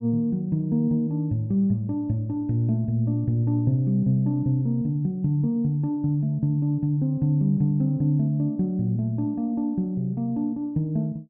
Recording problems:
none

